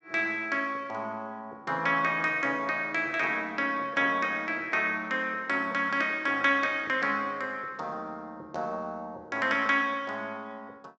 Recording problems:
low-pass filter; nothing above 7.9 kHz

